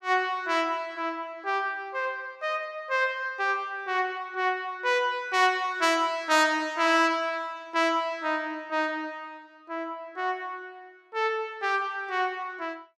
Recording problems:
none

